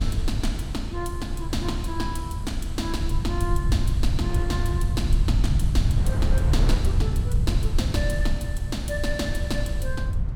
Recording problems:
low-frequency rumble; below 94 Hz, SNR -5 dB
wind noise; below 490 Hz, SNR 9 dB

